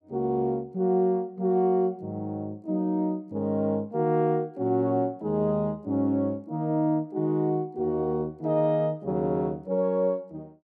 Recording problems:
none

